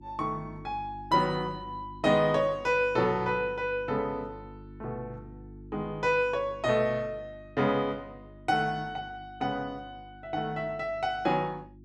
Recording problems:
electrical hum; 50 Hz, harmonics up to 350 Hz, SNR 19 dB

